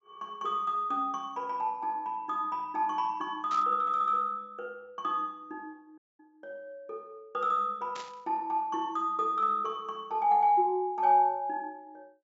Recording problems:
treble missing; nothing above 8 kHz
static burst; at 3.5 s and at 8 s; peak -11 dB vs average level
dropout; at 6 s

